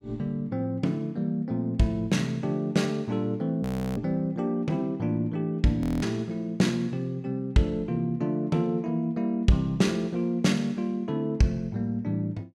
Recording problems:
audio freezing; at 3.5 s and at 6 s

